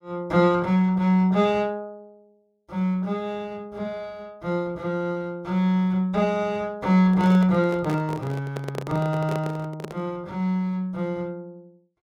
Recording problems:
handling noise; from 7 to 10 s; peak -3 dB vs average level

